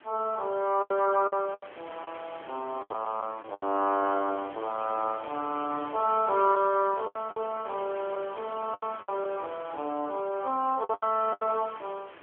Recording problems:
telephone audio; 260 Hz to 3.3 kHz, AMR-NB
wind on the microphone; below 2.4 kHz, SNR 18 dB
packet loss; 8% of the sound replaced, filled with the last packet

